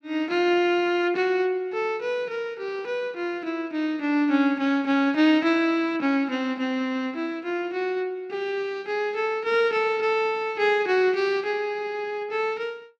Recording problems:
none

